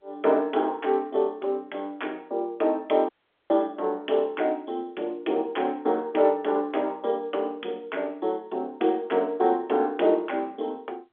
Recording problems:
telephone audio; 260 Hz to 3.5 kHz, G.711
audio cutting out; at 3 s

